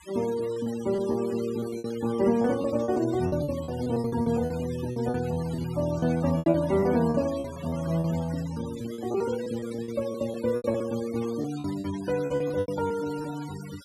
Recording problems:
noise reduction artefacts; signal-to-artefact ratio 16 dB
packet loss; 14% of the sound replaced, filled with repeated pitch periods

